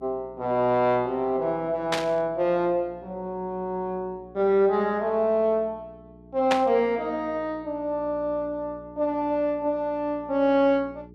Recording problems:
hum; 60 Hz, harmonics up to 420 Hz, SNR 24 dB
static burst; at 2 s and at 6.5 s; peak +3 dB vs average level

